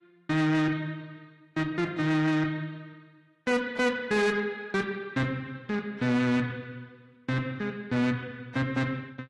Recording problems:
lossy compression; AAC, log-spectral distance 2 dB, nothing above 11.3 kHz
distortion; soft clipping, signal-to-distortion ratio 10 dB

